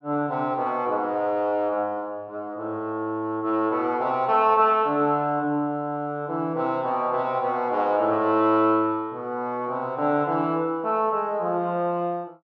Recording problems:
treble cut off; nothing above 6.6 kHz

